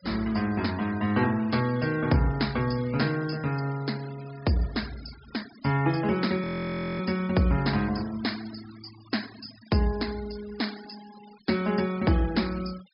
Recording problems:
treble cut off; nothing above 5.5 kHz
denoising artefacts; signal-to-artefact ratio 18 dB
audio freezing; at 6.5 s for 0.5 s

